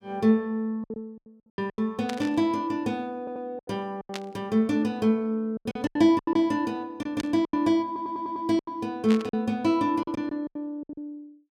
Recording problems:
packet loss; 12% of the sound replaced, filled with silence
burst of static; 4 times, first at 2 s; peak -4 dB vs average level
audio stuttering; at 3 s and at 8 s

